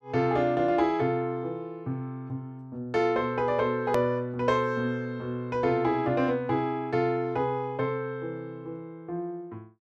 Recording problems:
edit click; at 4 s

